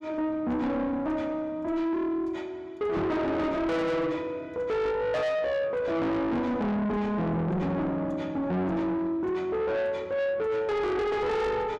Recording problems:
distorted audio; soft clipping, signal-to-distortion ratio 7 dB
microphone bump; at 3 s; peak +1 dB vs average level

